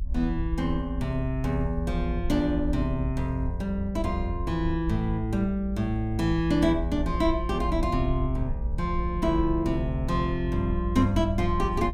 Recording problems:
low-frequency rumble; below 60 Hz, SNR 5 dB

